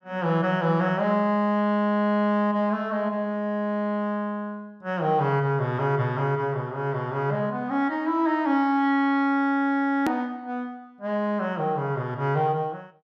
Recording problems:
click at an edit; at 10 s

